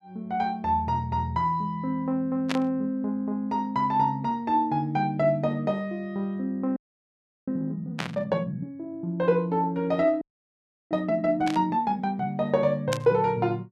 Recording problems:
static burst; 4 times, first at 2.5 s; peak 0 dB vs average level
frozen audio; at 7 s for 0.5 s and at 10 s for 0.5 s

